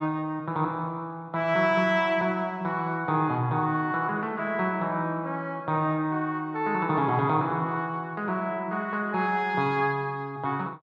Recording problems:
none

